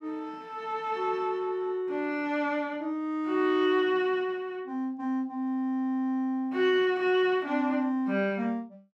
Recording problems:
none

